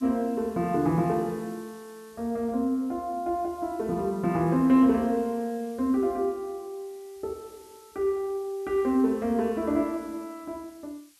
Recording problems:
hiss; slope +4 dB per octave, SNR 27 dB

